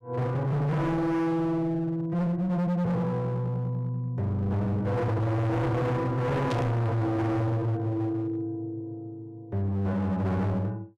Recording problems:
distorted audio; hard clipping, signal-to-distortion ratio 6 dB
burst of static; at 6.5 s; peak -5 dB vs average level

